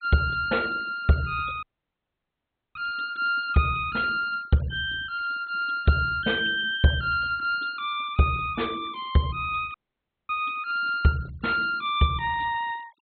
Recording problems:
low-pass filter; nothing above 4 kHz
noise reduction artefacts; signal-to-artefact ratio 22 dB
audio cutting out; at 1.5 s for 1 s and at 9.5 s for 0.5 s

